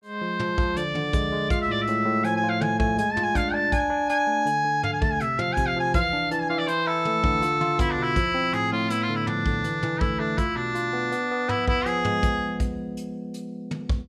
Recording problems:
none

